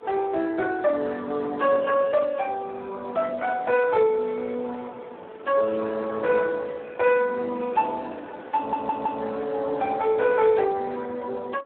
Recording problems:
phone line; 260 Hz to 2.8 kHz, Speex
wind on the microphone; below 1.1 kHz, SNR 22 dB
audio stuttering; at 8.5 s

